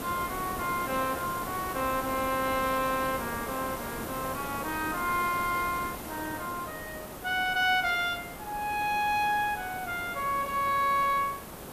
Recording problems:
hiss; slope -6 dB per octave, SNR 9 dB

